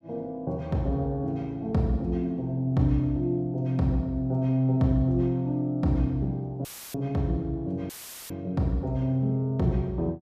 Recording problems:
audio cutting out; at 6.5 s and at 8 s; filled with static

